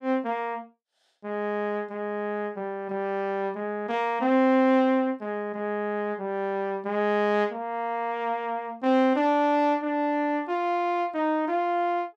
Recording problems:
none

